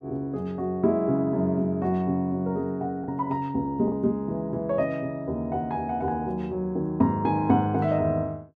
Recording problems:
lost packets; 0.9% of the sound replaced, filled with the last packet

